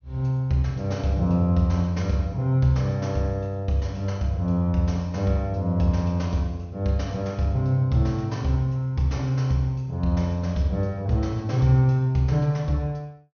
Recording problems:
treble missing; nothing above 6.4 kHz

